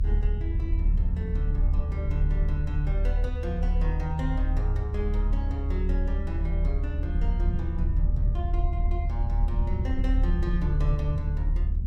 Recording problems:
low-frequency rumble; below 74 Hz, strongest tone 38 Hz, SNR -7 dB

